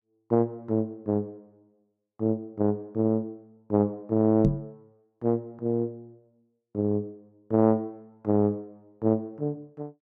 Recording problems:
microphone bump; at 4.5 s; peak +8 dB vs average level

